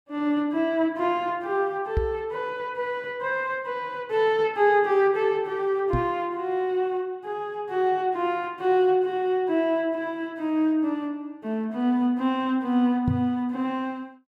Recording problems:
microphone bump; at 2 s, at 6 s and at 13 s; peak +3 dB vs average level

